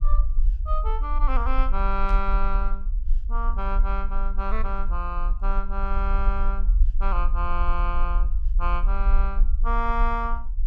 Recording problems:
low-frequency rumble; below 42 Hz, strongest tone 20 Hz, SNR -4 dB
static burst; at 2 s; peak -11 dB vs average level

